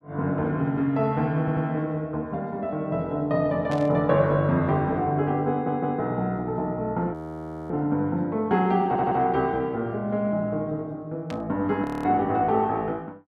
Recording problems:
audio stuttering; at 1.5 s, at 5.5 s and at 9 s
static burst; at 3.5 s and at 11 s; peak -10 dB vs average level
frozen audio; at 7 s for 0.5 s and at 12 s

